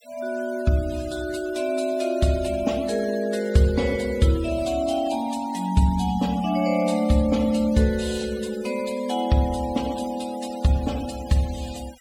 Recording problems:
denoising artefacts; signal-to-artefact ratio 19 dB

